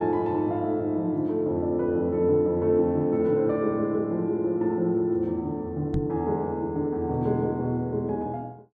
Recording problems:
knock on the microphone; at 6 s; peak -1 dB vs average level

